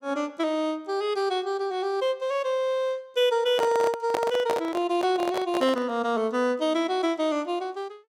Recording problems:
handling noise; from 3.5 to 6 s; peak +1 dB vs average level

